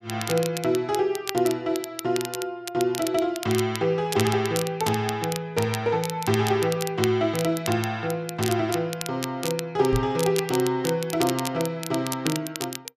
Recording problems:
crackle; vinyl, SNR 9 dB
microphone bump; at 10 s; peak +2 dB vs average level

